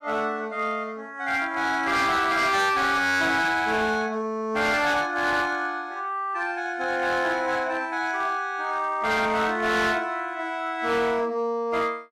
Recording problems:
distortion; hard clipping, signal-to-distortion ratio 10 dB

